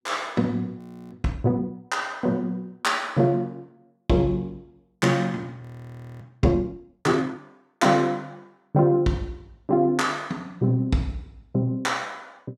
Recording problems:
frozen audio; at 1 s and at 5.5 s for 0.5 s

